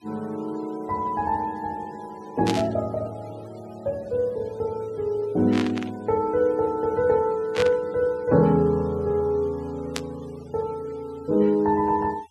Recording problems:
noise reduction artefacts; signal-to-artefact ratio 26 dB
static burst; 4 times, first at 2.5 s; peak +1 dB vs average level

